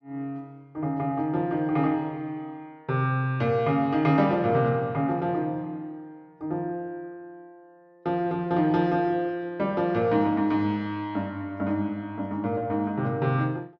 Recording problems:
none

